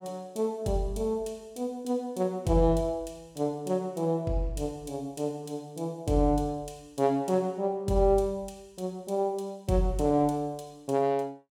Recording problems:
none

